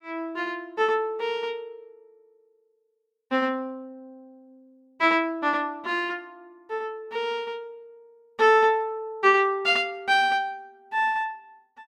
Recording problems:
none

